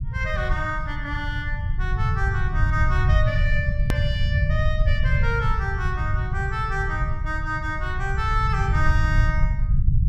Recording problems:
low-frequency rumble; below 110 Hz, SNR -3 dB
edit click; at 4 s

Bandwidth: 14.5 kHz